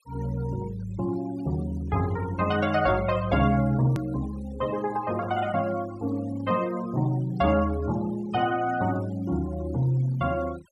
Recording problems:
noise reduction artefacts; signal-to-artefact ratio 20 dB
hard cut with a click; at 4 s

